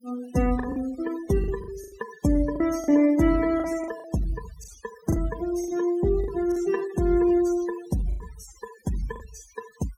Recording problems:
denoising artefacts; signal-to-artefact ratio 17 dB
lost packets; 8% of the sound replaced, filled with the last packet

